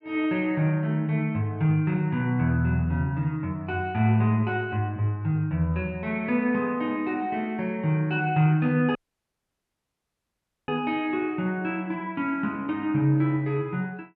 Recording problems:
audio cutting out; at 9 s for 1.5 s

